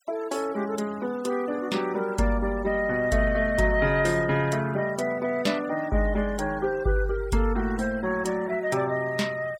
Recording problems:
denoising artefacts; signal-to-artefact ratio 21 dB

